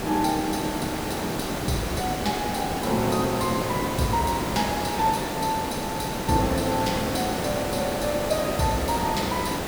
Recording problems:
background hiss; slope -6 dB per octave, SNR 1 dB

